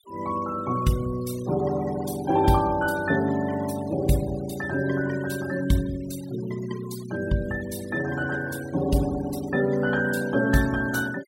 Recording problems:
denoising artefacts; signal-to-artefact ratio 17 dB

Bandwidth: 16.5 kHz